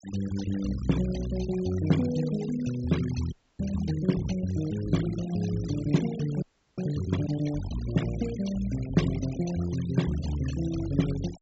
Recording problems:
treble cut off; nothing above 7.6 kHz
denoising artefacts; signal-to-artefact ratio 15 dB
frozen audio; at 3.5 s and at 6.5 s

